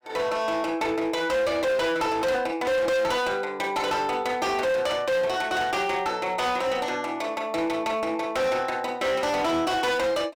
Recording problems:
distortion; hard clipping, uneven, signal-to-distortion ratio 7 dB

